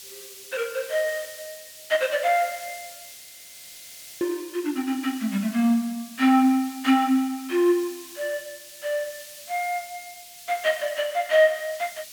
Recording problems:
hiss; SNR 16 dB
audio freezing; at 3 s for 1 s

